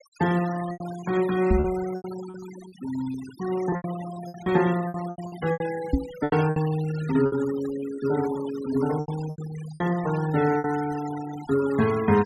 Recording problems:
denoising artefacts; signal-to-artefact ratio 15 dB
packet loss; 11% of the sound replaced, filled with repeated pitch periods
microphone thump; at 1.5 s and at 6 s; peak +7 dB vs average level

